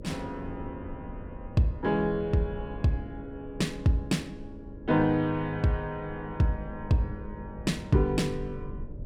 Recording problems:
electrical hum; 50 Hz, harmonics up to 600 Hz, SNR 19 dB
low-frequency rumble; below 120 Hz, SNR 16 dB

